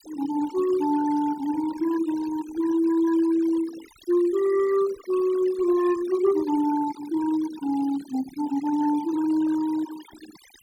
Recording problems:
denoising artefacts; signal-to-artefact ratio 18 dB

